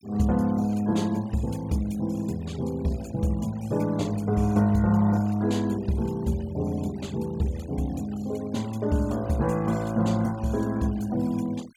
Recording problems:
noise reduction artefacts; signal-to-artefact ratio 23 dB

